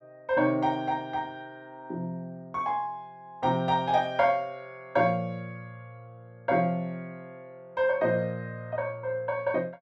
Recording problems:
none

